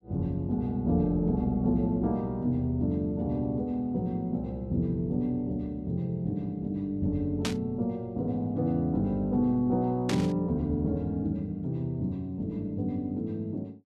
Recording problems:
burst of static; at 7.5 s and at 10 s; peak +1 dB vs average level

